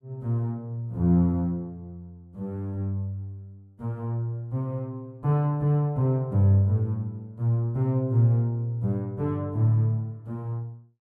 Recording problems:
none

